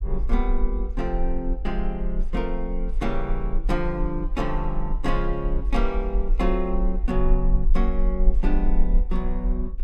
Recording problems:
low-frequency rumble; below 40 Hz, strongest tone 20 Hz, SNR -1 dB

